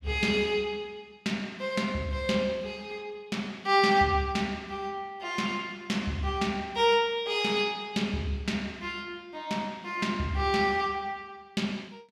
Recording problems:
none

